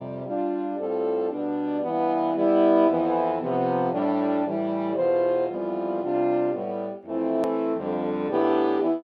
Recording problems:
edit click; at 7.5 s

